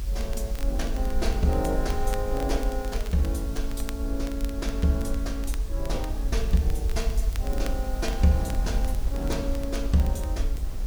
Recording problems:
hiss; slope +1 dB per octave, SNR 17 dB
low-frequency rumble; below 52 Hz, SNR 1 dB
wind noise; below 410 Hz, SNR 15 dB
crackle; vinyl, SNR 18 dB

